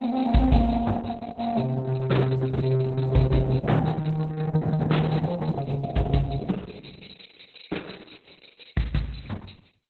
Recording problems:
lossy codec; Opus, then Opus, log-spectral distance 9 dB, nothing above 4 kHz

